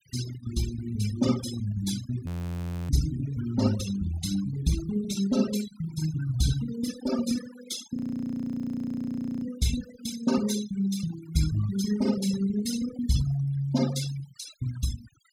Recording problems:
denoising artefacts; signal-to-artefact ratio 11 dB
audio freezing; at 2.5 s for 0.5 s and at 8 s for 1.5 s

